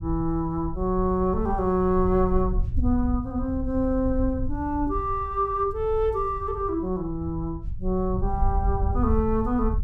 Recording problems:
low-frequency rumble; below 76 Hz, SNR 6 dB

